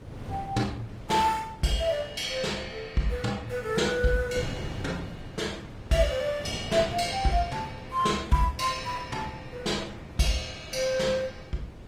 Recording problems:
codec artefacts; Opus, log-spectral distance 3 dB
wind noise; below 390 Hz, SNR 13 dB

